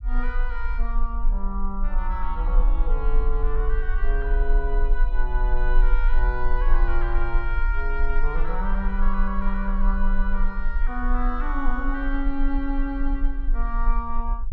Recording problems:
rumble; below 36 Hz, strongest tone 20 Hz, SNR -4 dB

